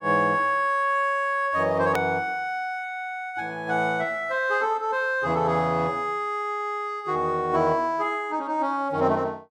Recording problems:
hard cut with a click; at 2 s

